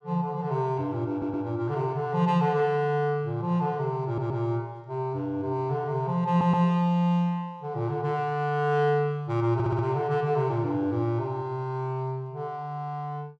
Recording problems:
stutter; 4 times, first at 1 s

